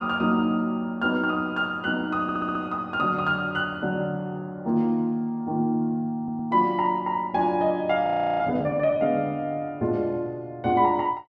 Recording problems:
stutter; at 2 s and at 6 s
audio freezing; at 8 s

